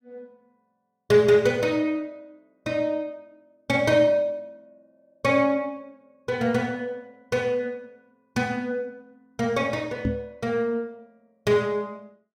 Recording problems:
microphone thump; at 10 s; peak +2 dB vs average level

